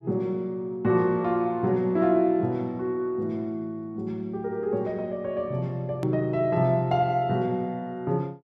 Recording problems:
hard cut with a click; at 6 s

